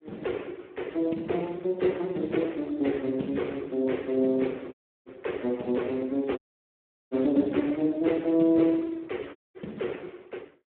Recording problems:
telephone audio; 190 Hz to 3.3 kHz, Speex
dropout; at 4.5 s, at 6.5 s for 0.5 s and at 9.5 s

